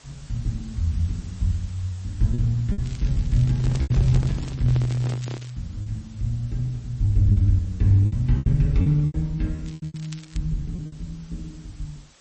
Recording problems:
lossy compression; MP3, log-spectral distance 4 dB, nothing above 7.3 kHz
hiss; slope -1 dB per octave, SNR 27 dB
packet loss; 7% of the sound replaced, filled with repeated pitch periods
crackle; from 3 to 5.5 s and at 9.5 s; loose cable, SNR 23 dB
microphone handling noise; from 3.5 to 5.5 s; peak -7 dB vs average level

